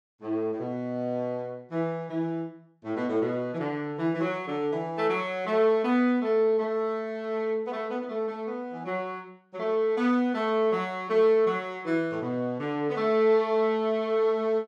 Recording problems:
none

